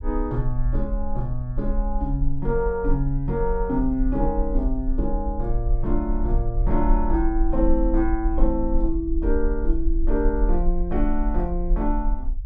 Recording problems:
rumble; below 42 Hz, SNR 1 dB

